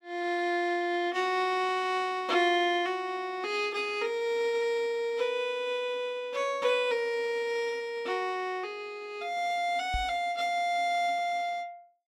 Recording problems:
knock on the microphone; at 10 s; peak -3 dB vs average level

